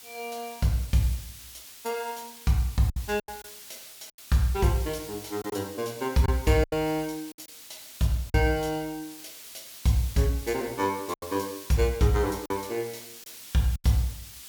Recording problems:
hiss; SNR 15 dB
packet loss; 5% of the sound replaced, filled with silence

